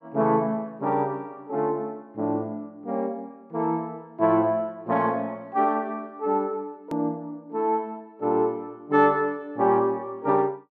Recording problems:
hard cut with a click; at 7 s

